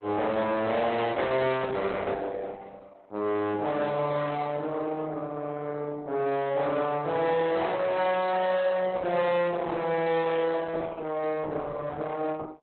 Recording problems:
codec artefacts; Opus, log-spectral distance 3 dB, nothing above 4 kHz
distortion; soft clipping, signal-to-distortion ratio 7 dB

